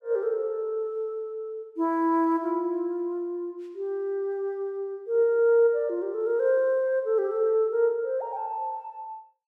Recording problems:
none

